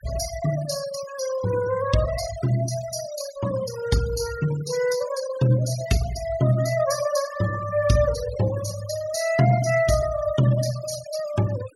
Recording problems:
denoising artefacts; signal-to-artefact ratio 12 dB

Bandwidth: 16 kHz